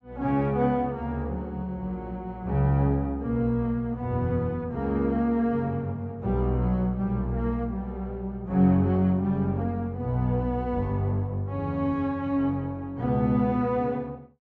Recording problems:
low-pass filter; nothing above 8 kHz

